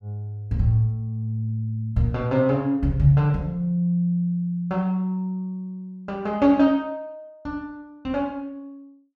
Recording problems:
none

